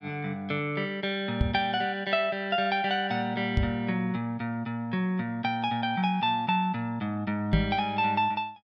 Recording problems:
microphone thump; at 1.5 s, at 3.5 s and at 7.5 s; peak +7 dB vs average level

